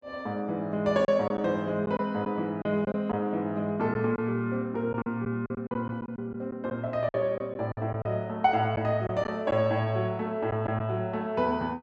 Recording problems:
packet loss; 6% of the sound replaced, filled with silence

